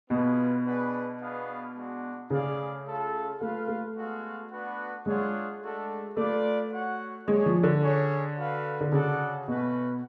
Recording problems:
none

